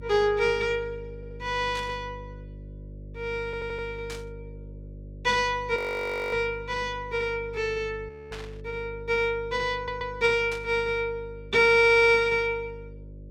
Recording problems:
hum; 50 Hz, harmonics up to 600 Hz, SNR 18 dB
audio stuttering; 4 times, first at 1 s
burst of static; 4 times, first at 2 s; peak -10 dB vs average level
audio freezing; at 6 s for 0.5 s and at 8 s

